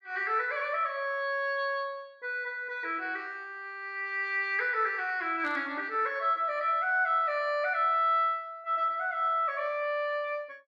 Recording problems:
burst of static; at 5.5 s; peak -15 dB vs average level

